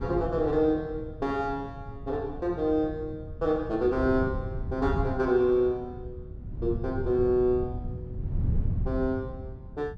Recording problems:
wind on the microphone; below 130 Hz, SNR 8 dB

